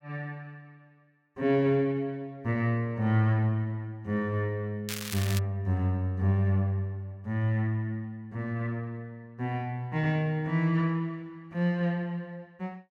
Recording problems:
crackling; at 5 s; loose cable, SNR 8 dB

